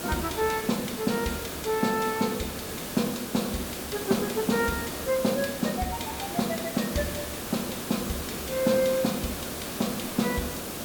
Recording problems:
hiss; SNR 5 dB

